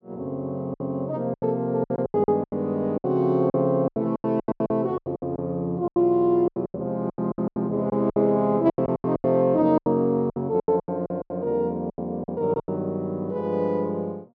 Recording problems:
lost packets; 17% of the sound replaced, filled with silence

